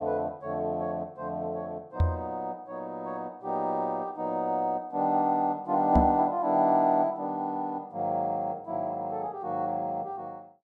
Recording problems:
knock on the microphone; at 2 s and at 6 s; peak +8 dB vs average level

